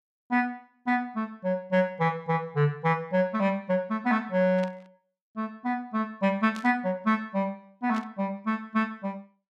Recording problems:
burst of static; at 4.5 s, at 6.5 s and at 8 s; peak -10 dB vs average level

